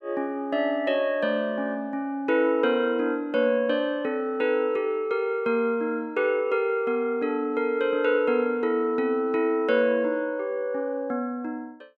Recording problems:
none

